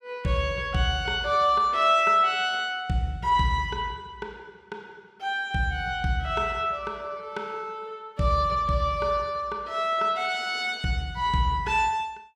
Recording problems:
none

